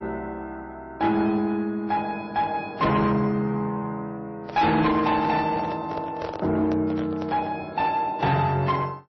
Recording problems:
codec artefacts; MP3, then AAC, log-spectral distance 2 dB, nothing above 5 kHz
distorted audio; soft clipping, signal-to-distortion ratio 11 dB
microphone handling noise; from 4.5 to 7.5 s; peak -5 dB vs average level

